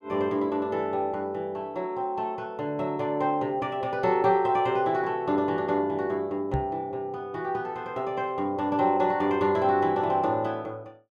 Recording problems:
microphone bump; at 6.5 s; peak +2 dB vs average level

